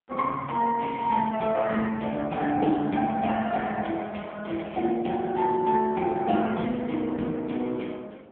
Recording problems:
phone line; 170 Hz to 3.4 kHz, AMR-NB
wind noise; below 630 Hz, SNR 20 dB

